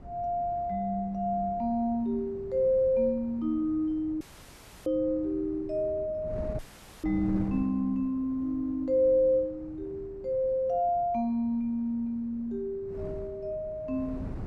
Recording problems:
wind noise; below 240 Hz, SNR 16 dB
audio cutting out; at 4 s for 0.5 s and at 6.5 s

